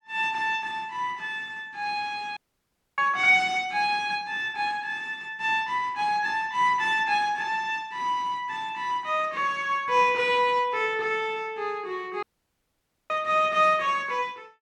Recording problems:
dropout; at 2.5 s for 0.5 s and at 12 s for 1 s

